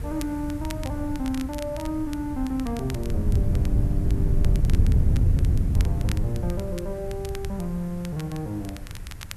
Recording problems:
hiss; SNR 19 dB
wind on the microphone; below 110 Hz, SNR -4 dB
crackling; vinyl, SNR 14 dB

